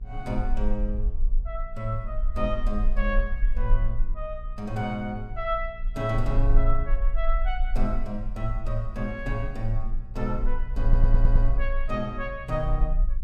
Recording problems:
electrical hum; 60 Hz, harmonics up to 660 Hz, SNR 18 dB
low-frequency rumble; below 36 Hz, SNR -1 dB
audio stuttering; at 11 s

